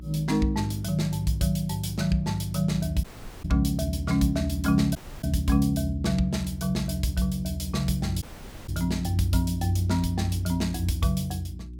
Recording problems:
hum; 60 Hz, harmonics up to 360 Hz, SNR 12 dB
dropout; at 3 s, at 5 s and at 8 s

